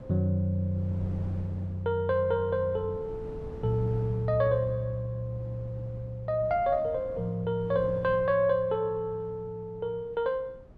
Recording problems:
wind on the microphone; below 290 Hz, SNR 17 dB

